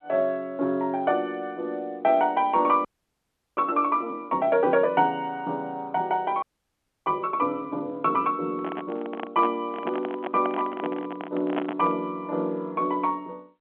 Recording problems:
telephone audio; 220 Hz to 3.8 kHz, G.711
frozen audio; at 3 s for 0.5 s and at 6.5 s for 0.5 s
microphone handling noise; from 8.5 to 12 s; peak 0 dB vs average level

